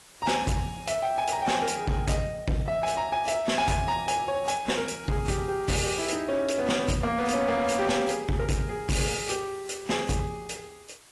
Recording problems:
lossy compression; AAC, log-spectral distance 5 dB, nothing above 11.3 kHz
distortion; hard clipping, signal-to-distortion ratio 11 dB
hiss; slope -1 dB per octave, SNR 23 dB

